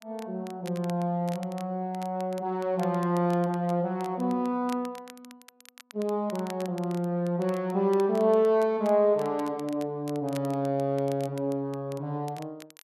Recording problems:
crackling; vinyl, SNR 22 dB

